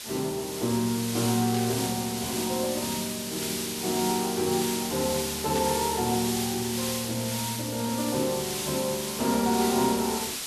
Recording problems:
hiss; slope +2 dB per octave, SNR 3 dB
static burst; at 1.5 s and at 5.5 s; peak -5 dB vs average level

